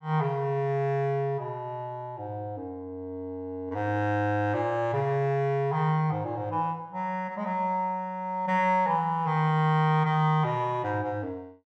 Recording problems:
none

